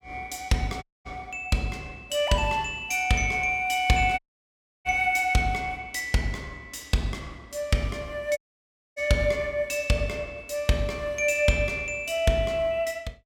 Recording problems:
audio cutting out; at 1 s, at 4 s for 0.5 s and at 8.5 s for 0.5 s

